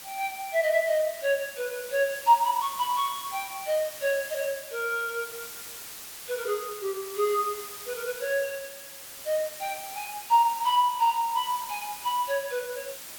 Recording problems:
background hiss; slope +1 dB per octave, SNR 11 dB

